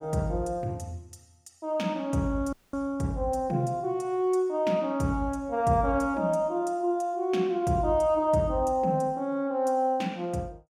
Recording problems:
audio cutting out; at 2.5 s

